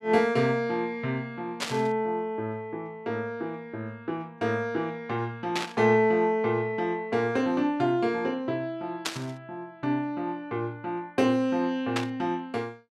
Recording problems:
static burst; 4 times, first at 1.5 s; peak +3 dB vs average level

